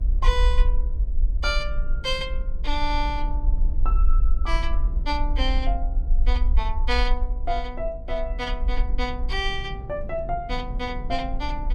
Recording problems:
mains hum; 60 Hz, harmonics up to 660 Hz, SNR 20 dB
low-frequency rumble; below 48 Hz, SNR -3 dB
wind noise; below 180 Hz, SNR 12 dB

